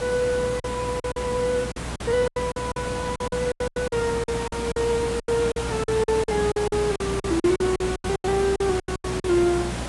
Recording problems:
codec artefacts; AAC, log-spectral distance 7 dB
electrical hum; 60 Hz, harmonics up to 540 Hz, SNR 12 dB
hiss; slope -4 dB per octave, SNR 7 dB
packet loss; 17% of the sound replaced, filled with silence

